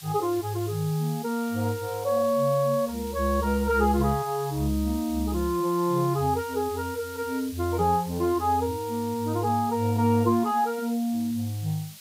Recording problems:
hiss; slope +3 dB per octave, SNR 16 dB

